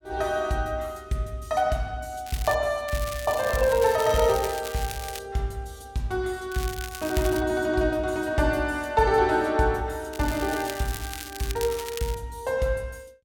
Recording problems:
crackling; 4 times, first at 2.5 s; loose cable, SNR 12 dB

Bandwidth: 17 kHz